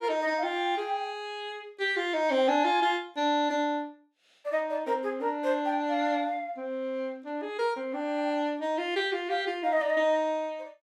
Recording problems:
none

